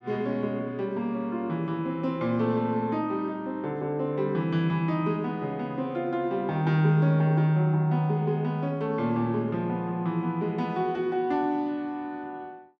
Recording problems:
none

